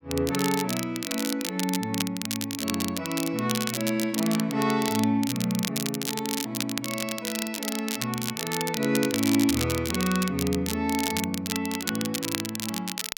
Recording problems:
crackling; vinyl, SNR 4 dB

